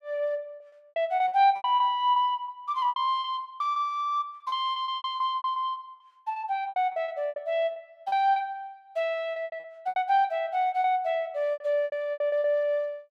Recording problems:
lost packets; 17% of the sound replaced, filled with repeated pitch periods

